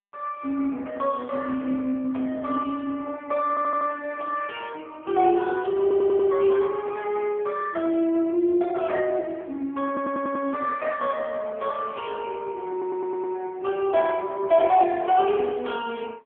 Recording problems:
phone line; 220 Hz to 3.3 kHz, AMR-NB
audio stuttering; 4 times, first at 3.5 s

